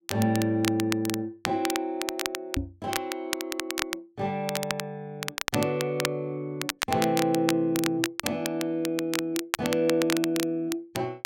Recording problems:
crackling; vinyl, SNR 5 dB
microphone bump; at 2.5 s; peak +3 dB vs average level

